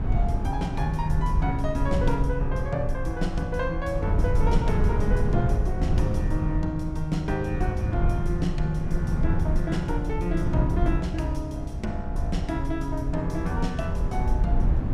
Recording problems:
low-frequency rumble; below 72 Hz, SNR 7 dB
wind on the microphone; below 110 Hz, SNR 0 dB

